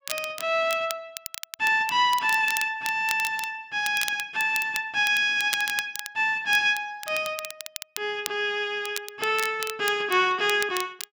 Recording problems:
crackle; vinyl, SNR 12 dB

